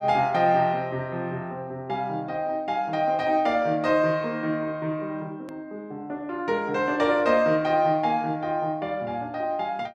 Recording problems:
click at an edit; at 5.5 s

